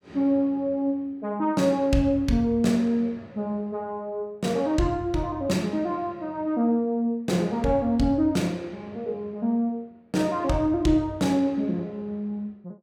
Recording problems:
none

